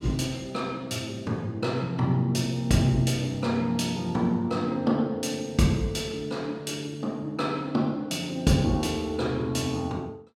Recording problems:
none

